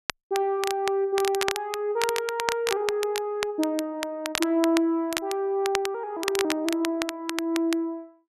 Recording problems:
crackle; vinyl, SNR 6 dB

